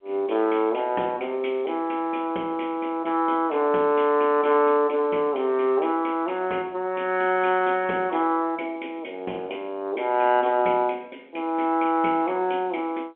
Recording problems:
telephone audio; 260 Hz to 3.3 kHz, G.711

